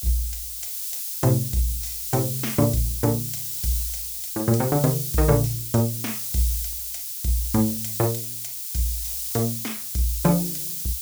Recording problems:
background hiss; SNR 2 dB

